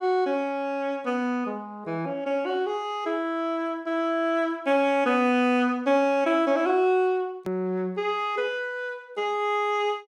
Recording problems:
click at an edit; at 7.5 s

